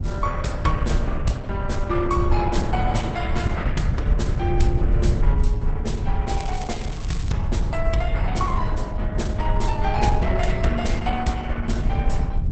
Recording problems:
lossy compression; Opus, log-spectral distance 3 dB, nothing above 8 kHz
rumble; below 94 Hz, SNR -2 dB
crackle; at 6.5 s; loose cable, SNR 13 dB

